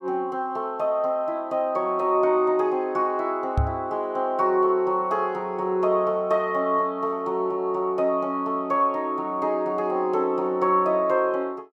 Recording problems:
knock on the microphone; at 3.5 s; peak +4 dB vs average level

